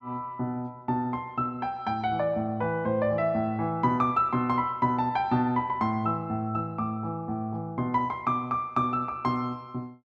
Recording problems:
none

